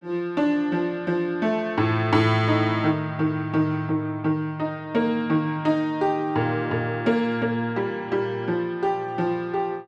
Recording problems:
none

